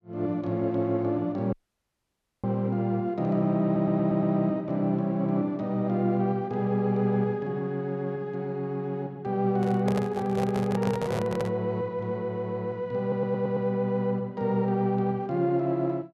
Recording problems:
audio cutting out; at 1.5 s for 1 s
stutter; at 3.5 s and at 13 s
microphone handling noise; from 9.5 to 12 s; peak -2 dB vs average level

